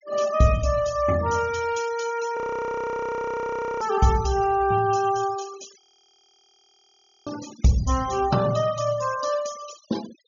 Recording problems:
treble cut off; nothing above 6.9 kHz
denoising artefacts; signal-to-artefact ratio 16 dB
audio freezing; at 2.5 s for 1.5 s and at 6 s for 1.5 s

